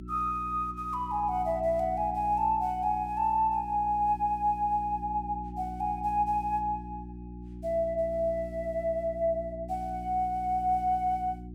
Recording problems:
hum; 60 Hz, harmonics up to 360 Hz, SNR 13 dB

